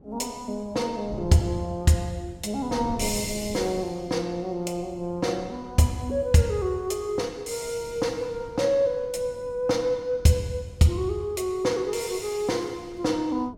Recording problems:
wind on the microphone; below 260 Hz, SNR 18 dB

